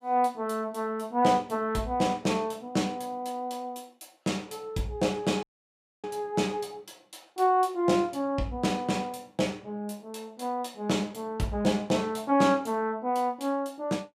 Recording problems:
audio cutting out; at 5.5 s for 0.5 s

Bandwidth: 15 kHz